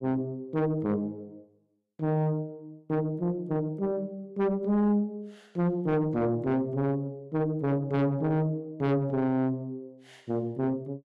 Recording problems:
distortion; soft clipping, signal-to-distortion ratio 5 dB

